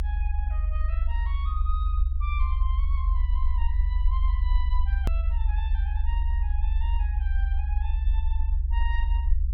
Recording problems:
rumble; below 66 Hz, SNR -14 dB
edit click; at 5 s

